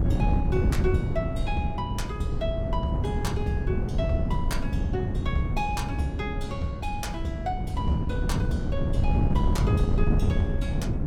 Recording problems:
wind noise; below 160 Hz, SNR -5 dB

